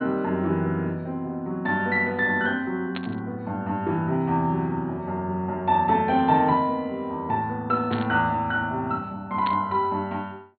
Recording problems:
treble cut off; nothing above 4.3 kHz
burst of static; at 3 s, at 8 s and at 9.5 s; peak -5 dB vs average level

